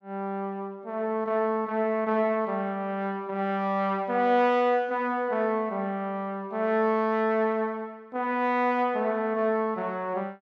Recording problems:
none

